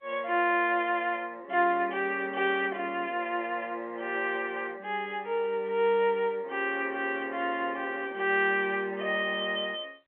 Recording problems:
phone line; 240 Hz to 3.4 kHz, G.711

